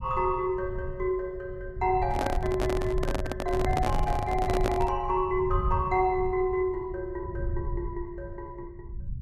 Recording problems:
low-frequency rumble; below 96 Hz, SNR 7 dB
microphone handling noise; from 2 to 5 s; peak +4 dB vs average level

